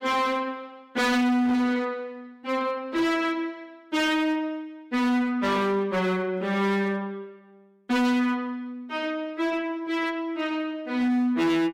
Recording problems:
distorted audio; hard clipping, signal-to-distortion ratio 7 dB

